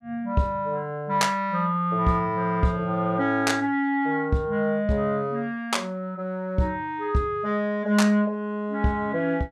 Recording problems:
none

